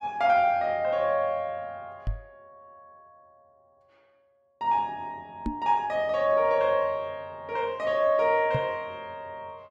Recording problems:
knock on the microphone; at 2 s, at 5.5 s and at 8.5 s; peak 0 dB vs average level

